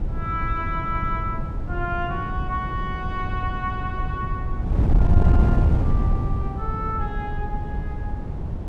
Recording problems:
wind on the microphone; below 130 Hz, SNR -5 dB

